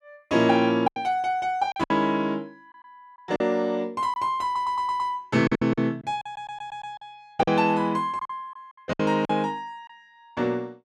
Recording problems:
packet loss; 9% of the sound replaced, filled with silence
audio stuttering; at 4.5 s and at 6 s

